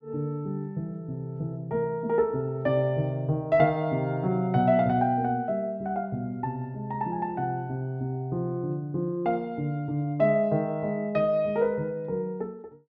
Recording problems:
none

